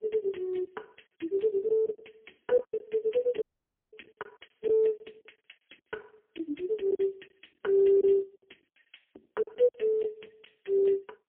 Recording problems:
telephone audio; 240 Hz to 3.3 kHz, AMR-NB, then MP3
lost packets; 9% of the sound replaced, filled with silence
audio cutting out; at 3.5 s for 0.5 s

